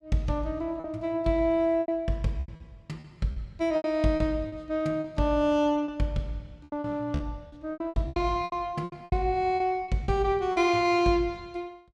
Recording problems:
lost packets; 12% of the sound replaced, filled with repeated pitch periods

